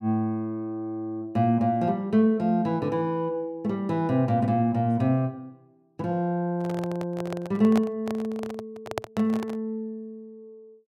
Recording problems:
microphone handling noise; from 6.5 to 9.5 s; peak +1 dB vs average level

